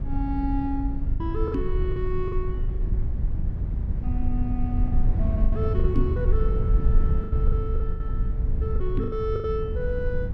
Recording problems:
rumble; below 76 Hz, SNR -5 dB
lost packets; 10% of the sound replaced, filled with the last packet
microphone thump; at 1.5 s, at 6 s and at 9 s; peak +8 dB vs average level

